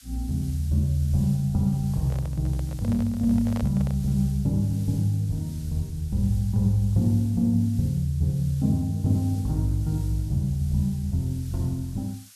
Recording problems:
background hiss; SNR 23 dB
handling noise; from 2 to 4 s; peak -8 dB vs average level

